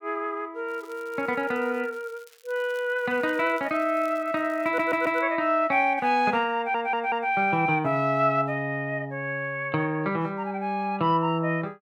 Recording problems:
crackling; from 0.5 to 5 s; loose cable, SNR 28 dB
audio stuttering; at 4.5 s and at 6.5 s

